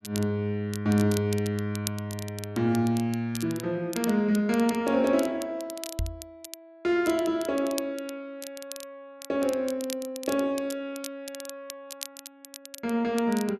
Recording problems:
crackling; vinyl, SNR 14 dB
microphone bump; at 6 s; peak 0 dB vs average level

